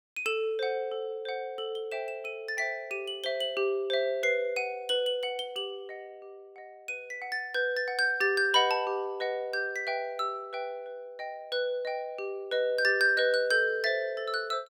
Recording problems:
none

